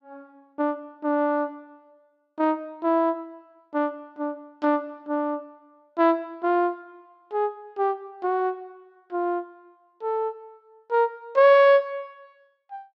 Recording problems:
none

